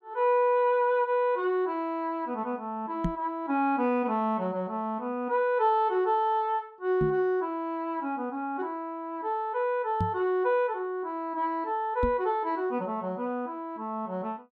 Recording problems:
microphone bump; 4 times, first at 3 s; peak +3 dB vs average level

